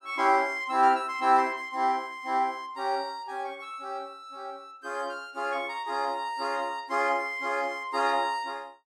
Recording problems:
none

